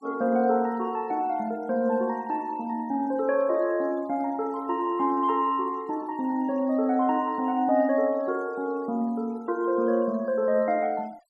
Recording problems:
denoising artefacts; signal-to-artefact ratio 28 dB

